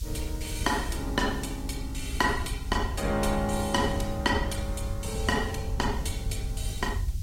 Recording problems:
codec artefacts; Opus, log-spectral distance 4 dB, nothing above 16 kHz
background hiss; SNR 19 dB
rumble; below 88 Hz, SNR 5 dB

